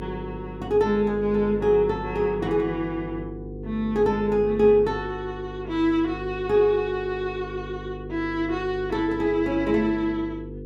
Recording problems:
electrical hum; 50 Hz, harmonics up to 500 Hz, SNR 12 dB

